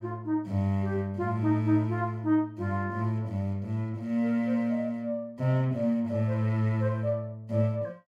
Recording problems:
none

